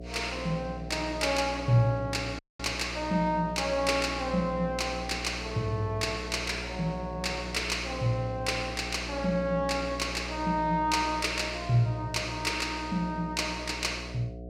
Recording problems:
electrical hum; 60 Hz, harmonics up to 720 Hz, SNR 11 dB
audio cutting out; at 2.5 s

